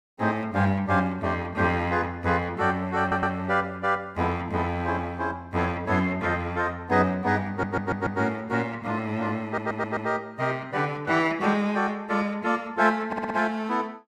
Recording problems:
stutter; 4 times, first at 3 s

